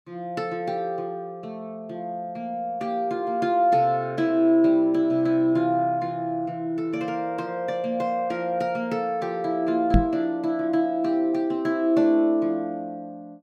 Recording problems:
microphone thump; at 10 s; peak +8 dB vs average level

